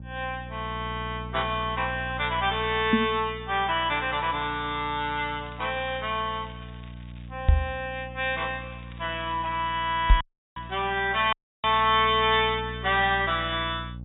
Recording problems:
treble cut off; nothing above 4 kHz
hum; 60 Hz, harmonics up to 540 Hz, SNR 14 dB
knock on the microphone; at 3 s, at 7.5 s and at 10 s; peak +10 dB vs average level
crackling; from 4.5 to 7.5 s and from 8.5 to 11 s; loose cable, SNR 27 dB
dropout; at 10 s and at 11 s

